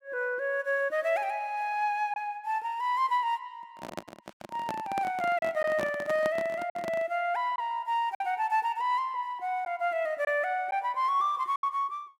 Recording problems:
lost packets; 3% of the sound replaced, filled with silence
handling noise; from 3.5 to 7 s; peak -3 dB vs average level

